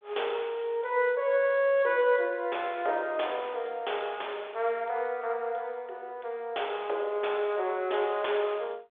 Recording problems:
telephone audio; 340 Hz to 3.6 kHz, G.726

